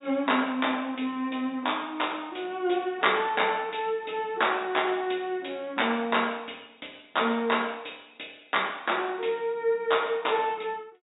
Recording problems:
treble missing; nothing above 4 kHz

